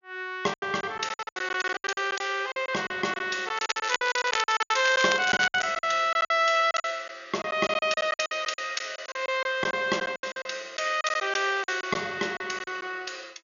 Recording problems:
treble cut off; nothing above 6.9 kHz
lost packets; 16% of the sound replaced, filled with silence
crackling; from 3.5 to 5.5 s; loose cable, SNR 6 dB

